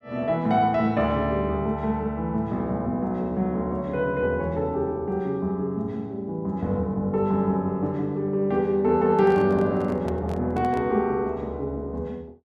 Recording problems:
handling noise; from 9 to 11 s; peak -10 dB vs average level

